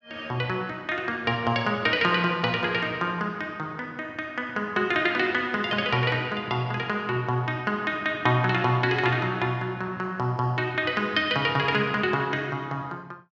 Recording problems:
none

